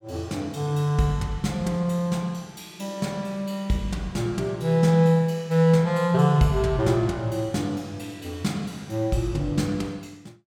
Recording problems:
none

